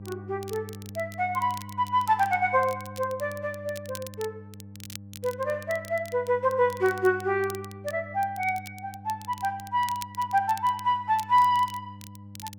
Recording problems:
electrical hum; 50 Hz, harmonics up to 500 Hz, SNR 17 dB
crackling; vinyl, SNR 19 dB

